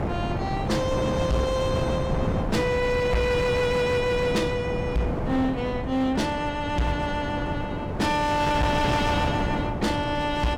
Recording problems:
distorted audio; hard clipping, signal-to-distortion ratio 11 dB
wind on the microphone; below 550 Hz, SNR 4 dB

